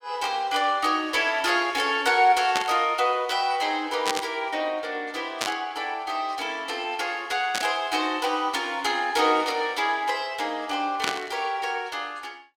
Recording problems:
burst of static; 5 times, first at 2.5 s; peak +3 dB vs average level

